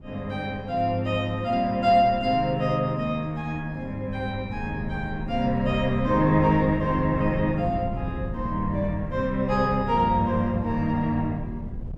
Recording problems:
wind noise; below 140 Hz, SNR 13 dB

